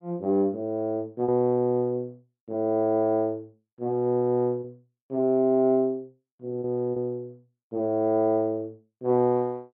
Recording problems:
packet loss; 2% of the sound replaced, filled with repeated pitch periods

